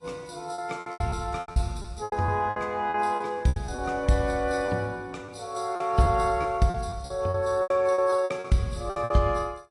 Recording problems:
lossy compression; AAC, log-spectral distance 3 dB
packet loss; 14% of the sound replaced, filled with repeated pitch periods

